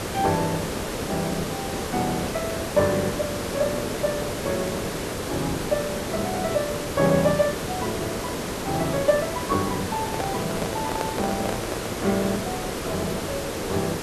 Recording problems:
background hiss; slope -5 dB per octave, SNR 2 dB
handling noise; from 10 to 12 s; peak +2 dB vs average level

